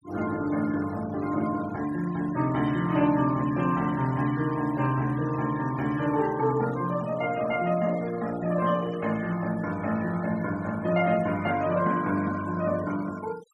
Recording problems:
denoising artefacts; signal-to-artefact ratio 18 dB

